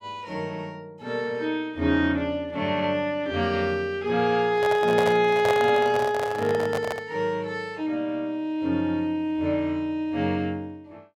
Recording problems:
microphone handling noise; from 4.5 to 7 s; peak +1 dB vs average level

